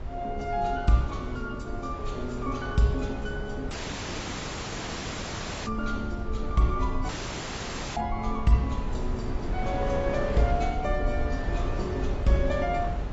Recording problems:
codec artefacts; AAC, log-spectral distance 5 dB, nothing above 7.6 kHz
rumble; below 66 Hz, SNR 6 dB
wind on the microphone; below 800 Hz, SNR 10 dB
audio cutting out; at 3.5 s for 2 s and at 7 s for 1 s

